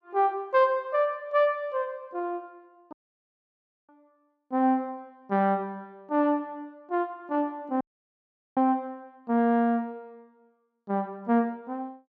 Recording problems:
audio cutting out; at 3 s for 1 s and at 8 s for 1 s

